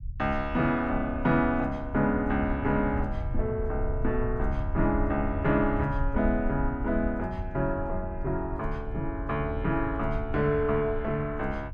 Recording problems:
low-frequency rumble; below 80 Hz, SNR 7 dB

